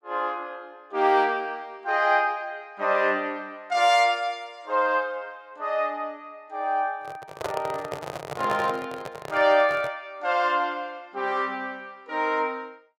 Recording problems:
microphone handling noise; from 7 to 10 s; peak -1 dB vs average level

